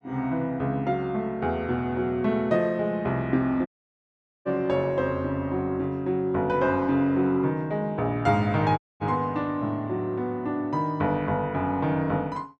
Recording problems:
dropout; at 3.5 s for 1 s and at 9 s

